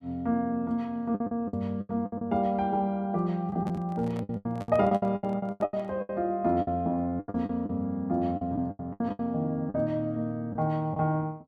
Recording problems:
packet loss; 14% of the sound replaced, filled with the last packet
handling noise; from 3.5 to 6 s; peak -9 dB vs average level

